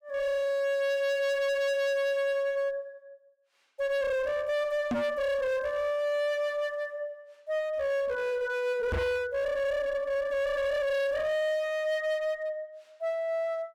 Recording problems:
distorted audio; hard clipping, uneven, signal-to-distortion ratio 6 dB
microphone bump; at 5 s and at 9 s; peak +2 dB vs average level

